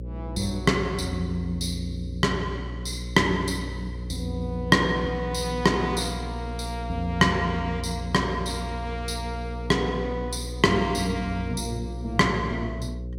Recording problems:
mains hum; 60 Hz, harmonics up to 540 Hz, SNR 8 dB

